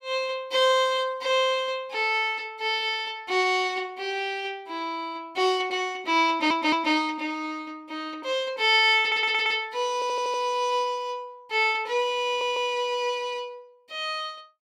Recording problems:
stutter; 4 times, first at 6.5 s

